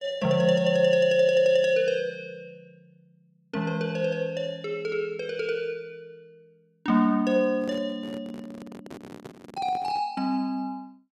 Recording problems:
microphone handling noise; from 7.5 to 10 s; peak -12 dB vs average level

